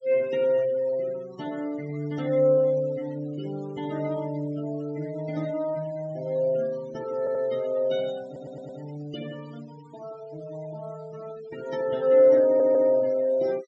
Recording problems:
treble cut off; nothing above 8 kHz
noise reduction artefacts; signal-to-artefact ratio 23 dB
audio stuttering; at 7 s, at 8.5 s and at 12 s

